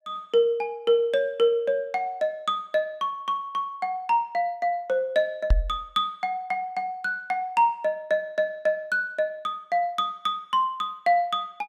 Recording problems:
microphone bump; at 5.5 s; peak +7 dB vs average level

